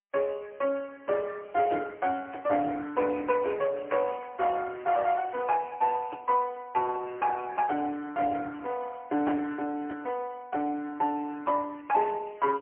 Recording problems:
phone line; 260 Hz to 3.2 kHz, AMR-NB, then MP3

